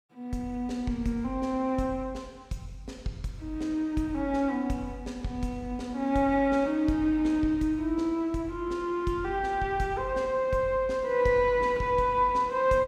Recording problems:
none

